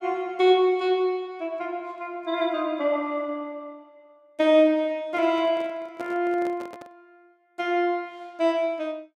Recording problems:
microphone handling noise; from 5 to 7 s; peak -11 dB vs average level

